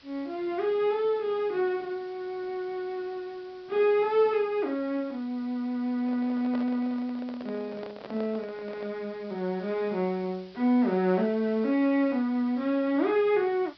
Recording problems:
low-pass filter; nothing above 5.5 kHz
hiss; SNR 27 dB
handling noise; from 6 to 9 s; peak -8 dB vs average level

